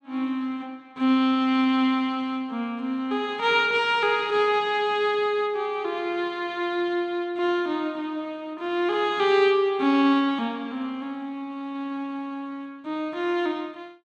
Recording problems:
none

